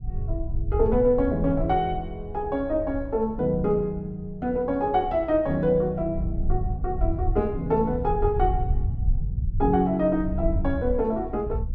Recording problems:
rumble; below 84 Hz, SNR 6 dB

